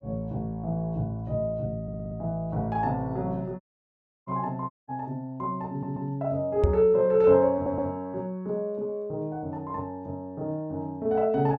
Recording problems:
audio stuttering; at 2 s, at 5.5 s and at 7.5 s
dropout; at 3.5 s for 0.5 s and at 4.5 s
knock on the microphone; at 6.5 s; peak +8 dB vs average level

